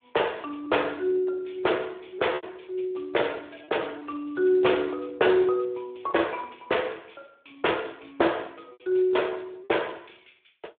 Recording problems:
phone line; 300 Hz to 3.6 kHz, Speex
packet loss; 3% of the sound replaced, filled with repeated pitch periods

